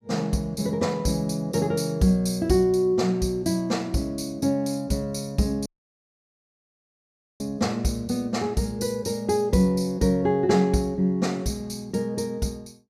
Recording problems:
dropout; at 5.5 s for 1.5 s

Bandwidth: 15 kHz